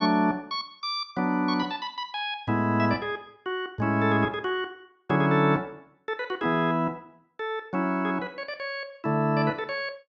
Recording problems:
none

